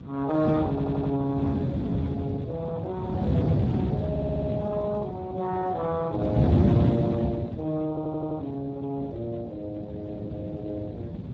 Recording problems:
lossy codec; Speex, log-spectral distance 3 dB
wind on the microphone; below 260 Hz, SNR -2 dB
audio stuttering; at 0.5 s, at 4 s and at 8 s

